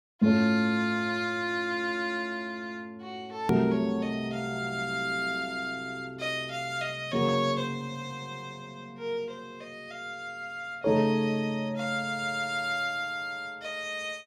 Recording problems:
click at an edit; at 3.5 s

